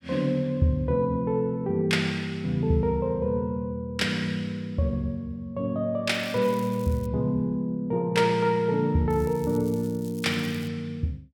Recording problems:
crackle; at 6 s, at 6.5 s and from 9 to 11 s; loose cable, SNR 23 dB

